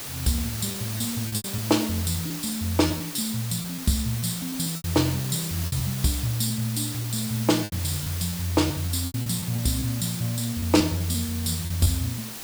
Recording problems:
hiss; slope -1 dB per octave, SNR 7 dB
lost packets; 9% of the sound replaced, filled with repeated pitch periods

